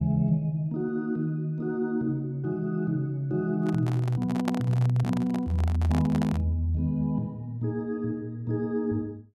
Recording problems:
handling noise; from 3.5 to 6.5 s; peak 0 dB vs average level

